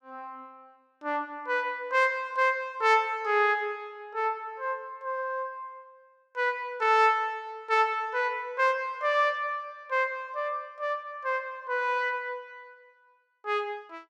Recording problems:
none

